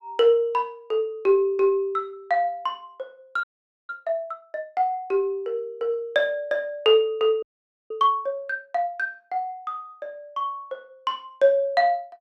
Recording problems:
audio freezing; at 3.5 s and at 7.5 s

